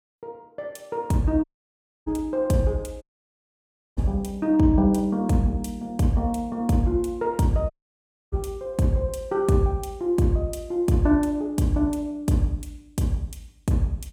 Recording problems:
dropout; at 1.5 s for 0.5 s, at 3 s for 1 s and at 7.5 s for 0.5 s

